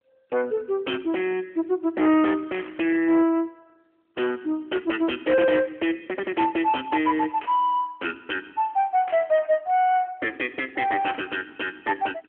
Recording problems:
phone line; 280 Hz to 3.2 kHz, AMR-NB
distorted audio; soft clipping, signal-to-distortion ratio 11 dB
static burst; 4 times, first at 2.5 s; peak -8 dB vs average level

